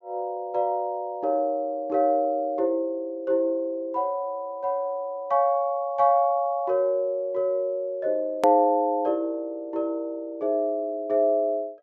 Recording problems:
low-pass filter; nothing above 7.4 kHz
click at an edit; at 8.5 s

